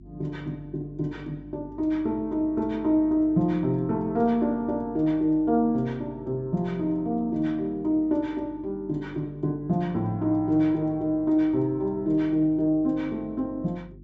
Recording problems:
treble cut off; nothing above 8 kHz
hum; 50 Hz, harmonics up to 350 Hz, SNR 22 dB

